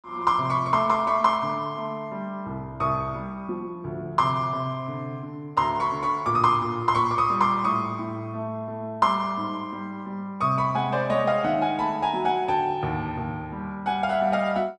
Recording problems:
none

